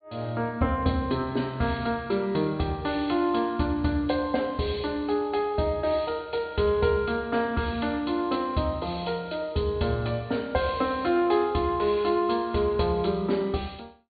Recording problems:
treble missing; nothing above 4.6 kHz

